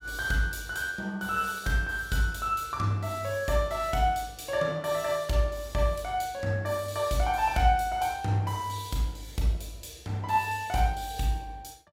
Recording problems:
none

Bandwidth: 16.5 kHz